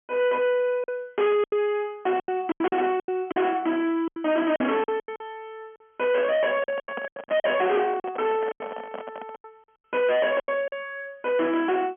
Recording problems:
telephone audio; 670 Hz to 3.4 kHz, G.711
distorted audio; soft clipping, signal-to-distortion ratio 7 dB
packet loss; 13% of the sound replaced, filled with silence
handling noise; from 6.5 to 9.5 s; peak -5 dB vs average level

